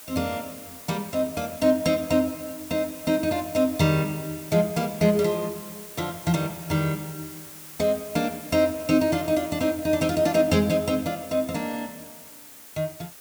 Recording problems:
background hiss; slope -1 dB per octave, SNR 15 dB

